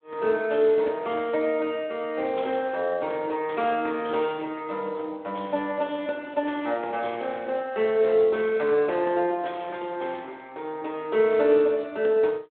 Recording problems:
phone line; 300 Hz to 3.7 kHz, Speex

